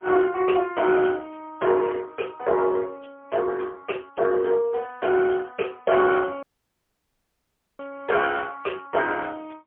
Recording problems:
telephone audio; 320 Hz to 3.4 kHz, AMR-NB, then MP3
audio cutting out; at 6.5 s for 1.5 s

